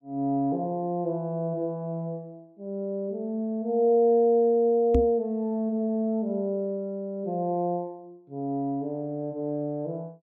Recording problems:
microphone thump; at 5 s; peak +6 dB vs average level

